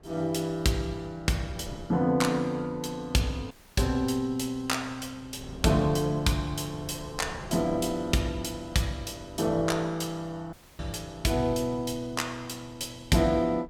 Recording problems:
wind noise; below 260 Hz, SNR 19 dB
audio cutting out; at 3.5 s and at 11 s

